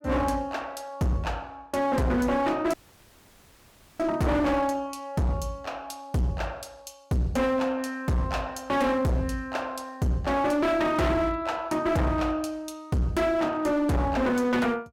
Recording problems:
distorted audio; hard clipping, uneven, signal-to-distortion ratio 7 dB
audio cutting out; at 2.5 s for 1.5 s

